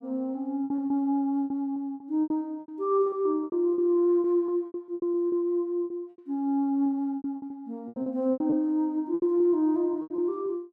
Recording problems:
packet loss; 15% of the sound replaced, filled with repeated pitch periods

